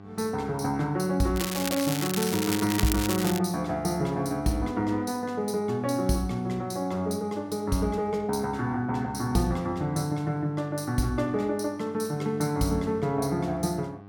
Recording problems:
electrical hum; 50 Hz, harmonics up to 1.9 kHz, SNR 19 dB
crackling; from 1.5 to 3.5 s; loose cable, SNR 4 dB

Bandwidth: 17 kHz